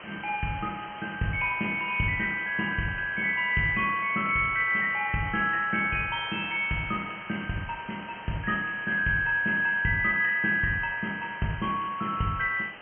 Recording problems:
low-pass filter; nothing above 3.1 kHz
hiss; SNR 16 dB

